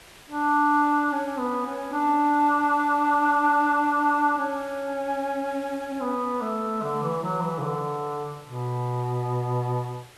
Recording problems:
hiss; slope -2 dB per octave, SNR 23 dB

